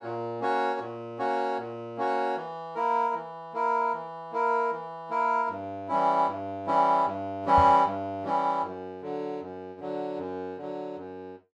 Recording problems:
knock on the microphone; at 7.5 s; peak 0 dB vs average level

